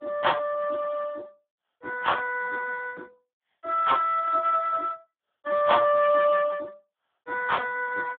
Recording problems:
telephone audio; 320 Hz to 3.4 kHz, Speex

